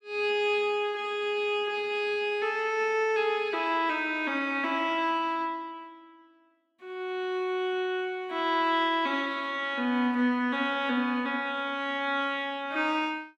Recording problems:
none

